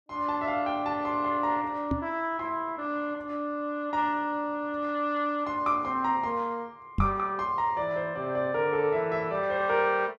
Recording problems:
knock on the microphone; at 2 s and at 7 s; peak +5 dB vs average level

